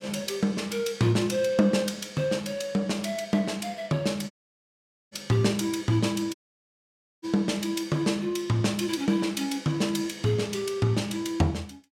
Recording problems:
audio cutting out; at 4.5 s for 1 s and at 6.5 s for 1 s

